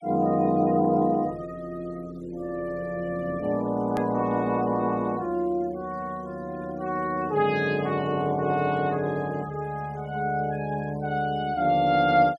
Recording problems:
denoising artefacts; signal-to-artefact ratio 27 dB
click at an edit; at 4 s

